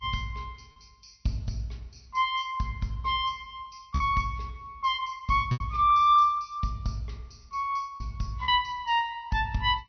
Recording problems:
treble cut off; nothing above 6 kHz
lossy compression; Vorbis, log-spectral distance 3 dB
lost packets; 2% of the sound replaced, filled with repeated pitch periods

